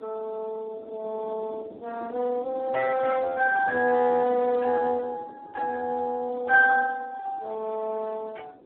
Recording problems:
telephone audio; 260 Hz to 2 kHz, Speex
wind noise; below 510 Hz, SNR 19 dB

